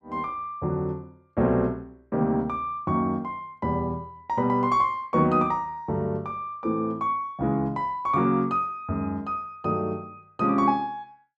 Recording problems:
none

